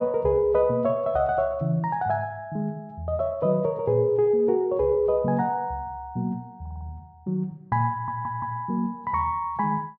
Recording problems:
stutter; at 6.5 s and at 8 s

